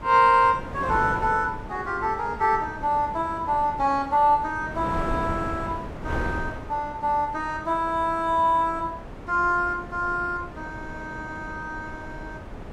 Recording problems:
wind on the microphone; below 600 Hz, SNR 12 dB

